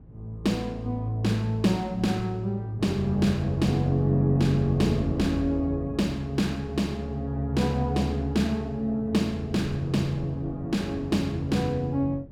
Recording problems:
wind on the microphone; below 230 Hz, SNR 20 dB

